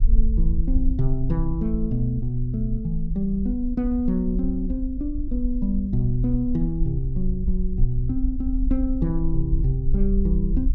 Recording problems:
rumble; below 50 Hz, strongest tone 20 Hz, SNR 2 dB

